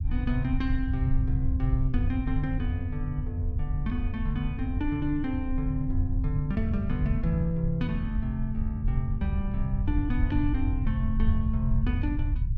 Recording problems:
low-frequency rumble; below 84 Hz, SNR 0 dB

